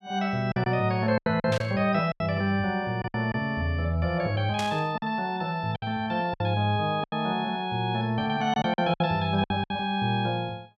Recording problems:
packet loss; 8% of the sound replaced, filled with silence
burst of static; at 1.5 s and at 4.5 s; peak -3 dB vs average level

